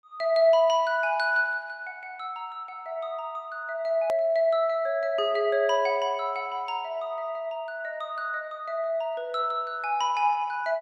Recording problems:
hard cut with a click; at 4 s

